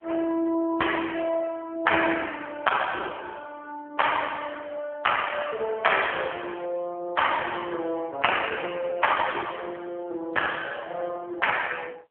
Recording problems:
phone line; 300 Hz to 3.2 kHz, AMR-NB

